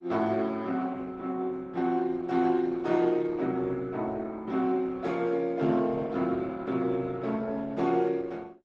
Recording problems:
lossy codec; Opus, log-spectral distance 3 dB

